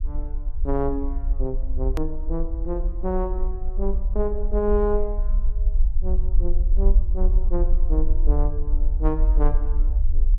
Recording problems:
rumble; below 44 Hz, strongest tone 22 Hz, SNR -4 dB
click at an edit; at 2 s

